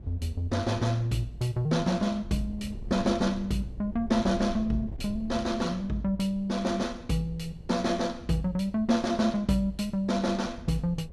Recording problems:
wind noise; below 120 Hz, SNR 16 dB

